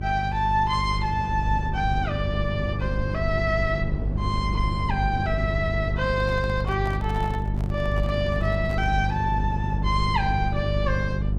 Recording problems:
hum; 50 Hz, harmonics up to 450 Hz, SNR 1 dB
rumble; below 150 Hz, SNR 6 dB
microphone handling noise; from 6 to 9 s; peak -8 dB vs average level

